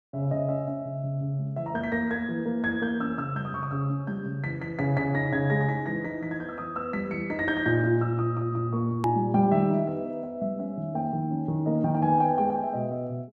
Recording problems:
click at an edit; at 9 s

